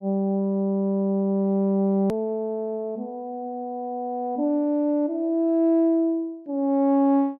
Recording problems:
hard cut with a click; at 2 s

